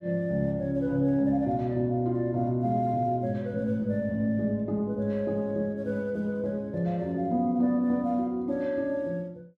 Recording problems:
none

